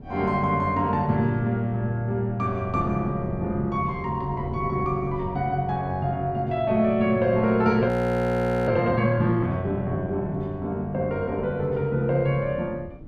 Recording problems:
wind noise; below 260 Hz, SNR 17 dB
audio freezing; at 8 s for 1 s

